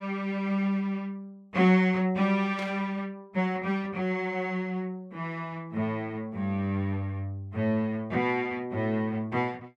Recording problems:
burst of static; at 2.5 s; peak -8 dB vs average level

